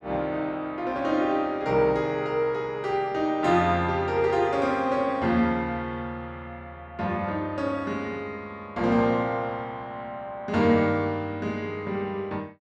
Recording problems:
none

